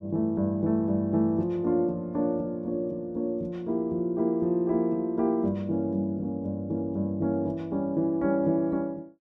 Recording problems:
none

